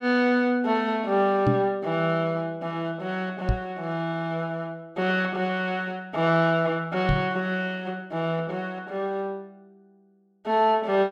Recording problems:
microphone thump; at 1.5 s, at 3.5 s and at 7 s; peak +6 dB vs average level

